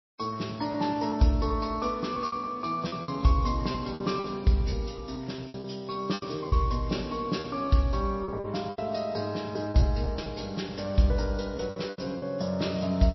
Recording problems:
codec artefacts; MP3, log-spectral distance 5 dB, nothing above 5.7 kHz
packet loss; 10% of the sound replaced, filled with repeated pitch periods

